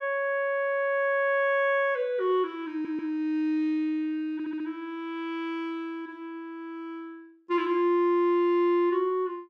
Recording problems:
audio stuttering; at 2.5 s and at 4.5 s

